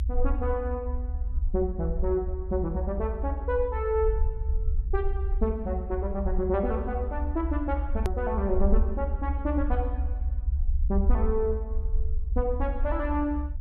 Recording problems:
rumble; below 70 Hz, SNR 0 dB
edit click; at 8 s

